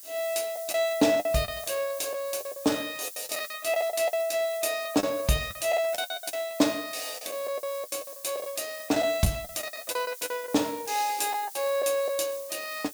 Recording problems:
hiss; SNR 13 dB
lost packets; 12% of the sound replaced, filled with the last packet

